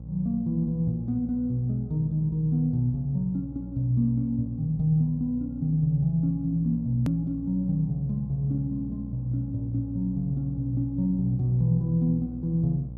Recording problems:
hum; 60 Hz, harmonics up to 540 Hz, SNR 12 dB
hard cut with a click; at 7 s

